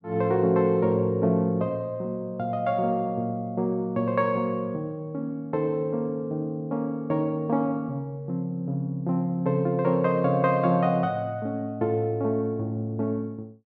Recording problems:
none

